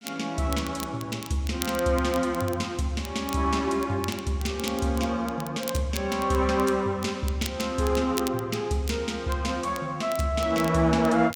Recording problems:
crackling; vinyl, SNR 14 dB

